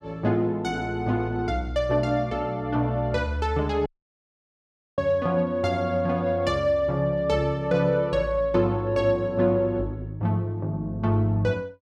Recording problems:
audio cutting out; at 4 s for 1 s

